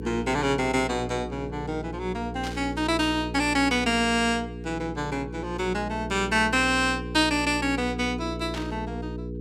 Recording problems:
electrical hum; 60 Hz, harmonics up to 480 Hz, SNR 9 dB
static burst; at 2.5 s and at 8.5 s; peak -7 dB vs average level

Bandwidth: 17 kHz